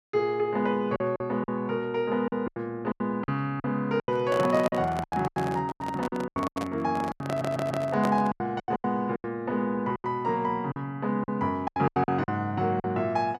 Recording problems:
lost packets; 14% of the sound replaced, filled with silence
handling noise; from 4 to 8.5 s; peak 0 dB vs average level
stutter; at 7.5 s

